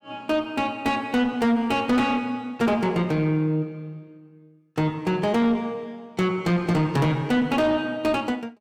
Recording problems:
distorted audio; soft clipping, signal-to-distortion ratio 9 dB

